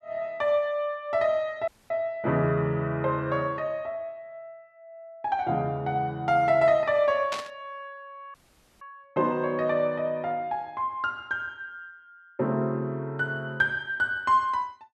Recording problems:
dropout; at 1.5 s and at 8.5 s
static burst; at 7.5 s; peak -2 dB vs average level

